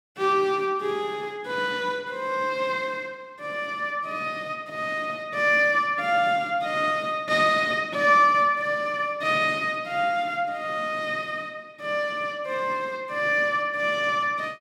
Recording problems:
none

